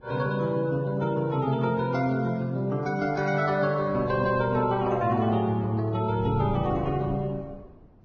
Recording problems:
lossy codec; Vorbis, log-spectral distance 2 dB, nothing above 5.7 kHz
wind noise; below 300 Hz, SNR 15 dB

